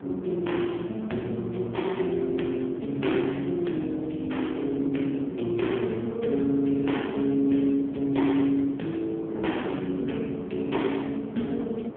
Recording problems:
phone line; 190 Hz to 3.4 kHz, AMR-NB
wind on the microphone; below 540 Hz, SNR 14 dB

